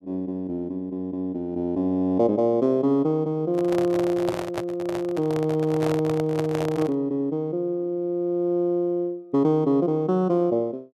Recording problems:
microphone handling noise; from 3.5 to 7 s; peak -1 dB vs average level

